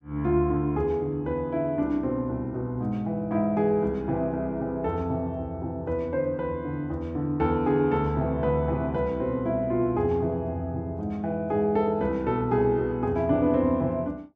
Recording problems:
none

